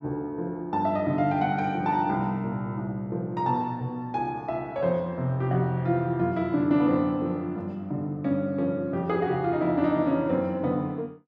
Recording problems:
none

